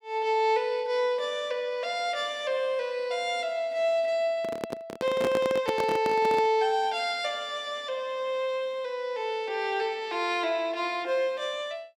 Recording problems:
microphone handling noise; from 4.5 to 6.5 s; peak +1 dB vs average level

